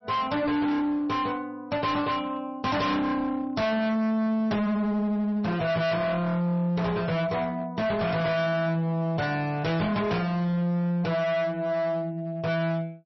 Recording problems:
lossy compression; MP3, log-spectral distance 2 dB, nothing above 5.8 kHz
distorted audio; hard clipping, uneven, signal-to-distortion ratio 6 dB

